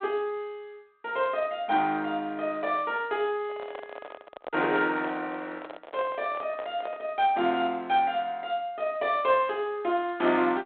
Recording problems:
phone line; 220 Hz to 3.5 kHz, G.726
handling noise; from 3.5 to 7 s; peak -4 dB vs average level

